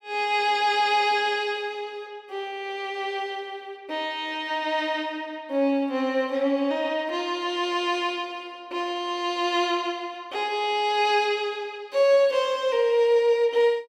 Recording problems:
none

